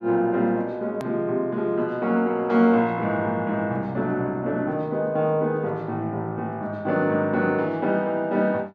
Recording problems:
hard cut with a click; at 1 s

